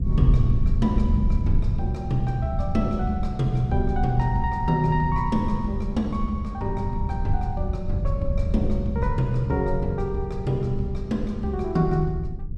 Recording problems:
low-frequency rumble; below 96 Hz, SNR 3 dB

